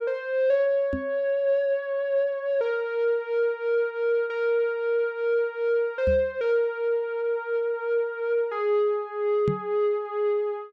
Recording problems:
microphone thump; at 1 s, at 6 s and at 9.5 s; peak +1 dB vs average level

